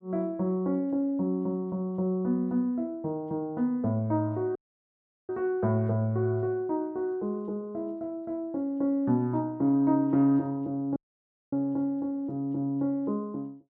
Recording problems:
audio cutting out; at 4.5 s for 0.5 s and at 11 s for 0.5 s

